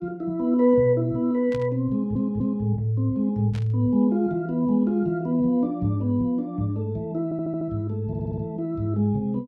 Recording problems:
burst of static; at 1.5 s and at 3.5 s; peak -14 dB vs average level
stutter; at 2 s, at 7 s and at 8 s

